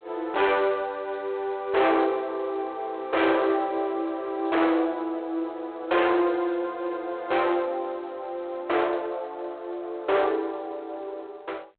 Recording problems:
phone line; 280 Hz to 3.9 kHz, G.726
distorted audio; soft clipping, signal-to-distortion ratio 7 dB

